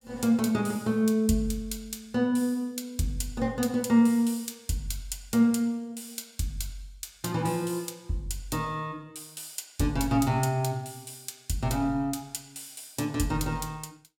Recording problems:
none

